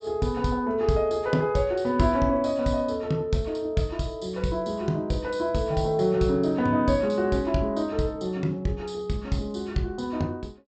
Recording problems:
low-pass filter; nothing above 8 kHz

